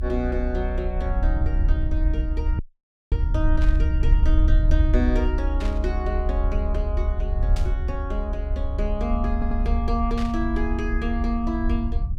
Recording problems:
rumble; below 66 Hz, SNR -4 dB
dropout; at 2.5 s for 0.5 s
burst of static; 4 times, first at 3.5 s; peak -4 dB vs average level
audio stuttering; at 9.5 s

